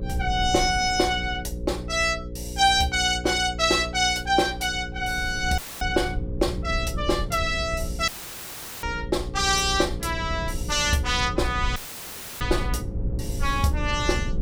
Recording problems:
hum; 60 Hz, harmonics up to 540 Hz, SNR 12 dB
low-frequency rumble; below 96 Hz, SNR 11 dB
dropout; at 5.5 s, at 8 s for 1 s and at 12 s for 0.5 s; filled with static

